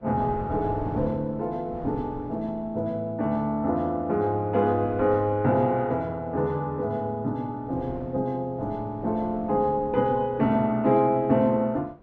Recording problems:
wind on the microphone; below 470 Hz, SNR 17 dB

